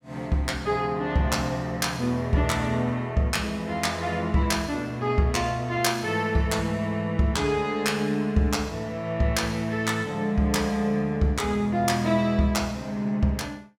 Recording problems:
none

